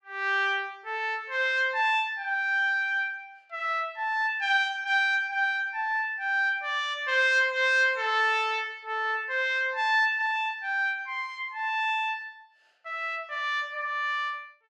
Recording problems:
none

